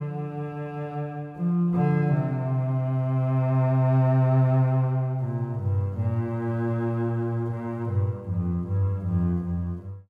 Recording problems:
none

